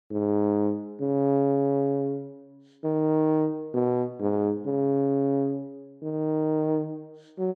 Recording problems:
none

